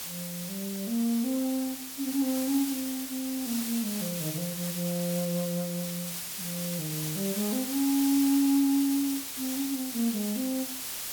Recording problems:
background hiss; slope +1 dB per octave, SNR 4 dB

